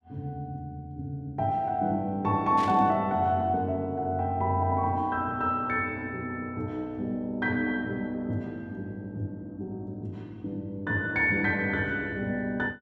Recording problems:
static burst; at 2.5 s; peak -7 dB vs average level

